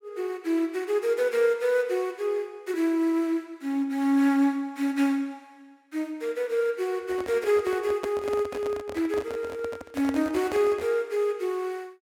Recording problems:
handling noise; from 7 to 11 s; peak -4 dB vs average level

